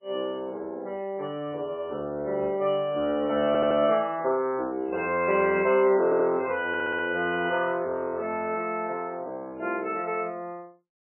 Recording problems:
lossy codec; MP3, log-spectral distance 2 dB, nothing above 2.4 kHz
audio stuttering; at 3.5 s, at 6 s and at 6.5 s

